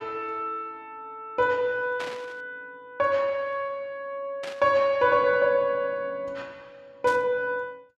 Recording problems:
burst of static; at 2 s, at 4.5 s and at 7 s; peak -7 dB vs average level

